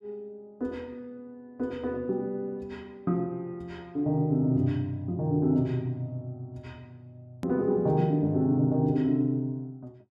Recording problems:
edit click; at 7.5 s

